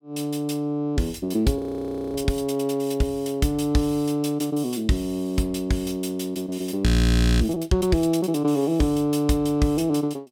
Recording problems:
audio freezing; at 1.5 s for 0.5 s and at 7 s for 0.5 s

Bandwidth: 18 kHz